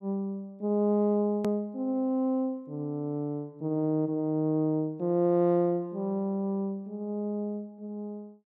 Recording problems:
click at an edit; at 1.5 s

